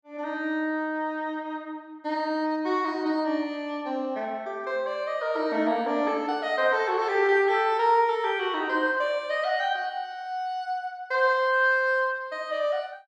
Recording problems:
none

